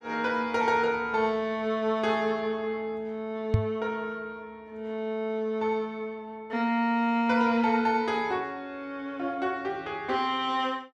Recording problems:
microphone bump; at 3.5 s; peak +8 dB vs average level

